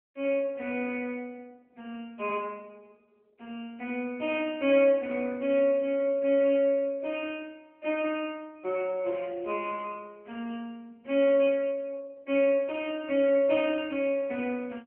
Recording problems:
telephone audio; 260 Hz to 3.3 kHz, AMR-NB

